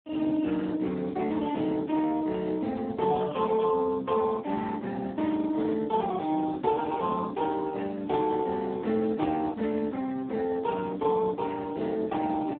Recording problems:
telephone audio; 220 Hz to 2.1 kHz, Speex

